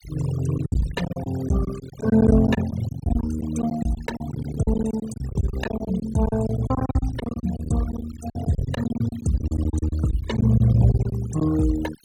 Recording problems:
noise reduction artefacts; signal-to-artefact ratio 15 dB
packet loss; 17% of the sound replaced, filled with silence

